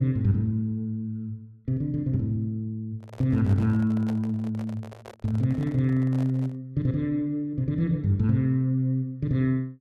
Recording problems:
microphone handling noise; from 3 to 6.5 s; peak -11 dB vs average level

